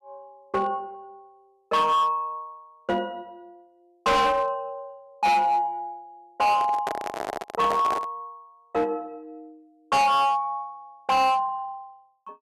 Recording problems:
distorted audio; hard clipping, signal-to-distortion ratio 7 dB
microphone handling noise; from 6.5 to 8 s; peak -1 dB vs average level

